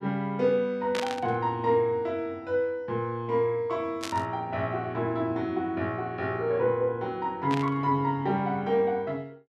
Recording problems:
static burst; at 1 s, at 4 s and at 7.5 s; peak -1 dB vs average level

